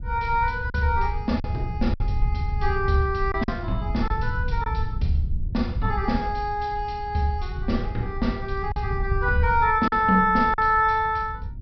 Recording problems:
treble missing; nothing above 5.5 kHz
wind noise; below 84 Hz, SNR 6 dB
packet loss; 3% of the sound replaced, filled with silence

